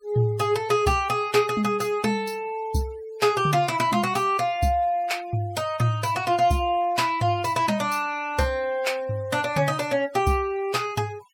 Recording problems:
noise reduction artefacts; signal-to-artefact ratio 22 dB

